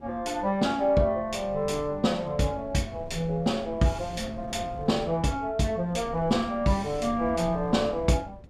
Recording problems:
wind noise; below 220 Hz, SNR 17 dB

